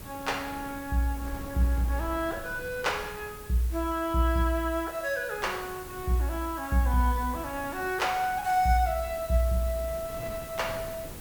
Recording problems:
background hiss; slope 0 dB per octave, SNR 16 dB
wind noise; below 390 Hz, SNR 17 dB

